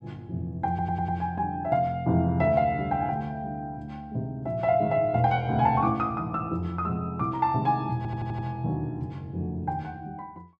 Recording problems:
audio stuttering; at 0.5 s and at 8 s

